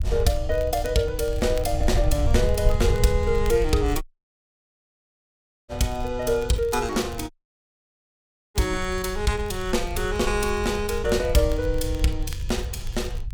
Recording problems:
low-frequency rumble; below 76 Hz, SNR 5 dB
crackle; vinyl, SNR 23 dB
dropout; at 4 s for 1.5 s and at 7.5 s for 1 s

